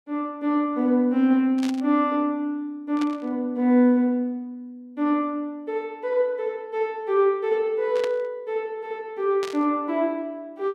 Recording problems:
static burst; 4 times, first at 1.5 s; peak -6 dB vs average level

